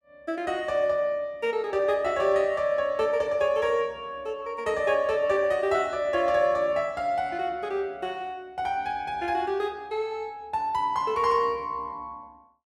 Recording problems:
none

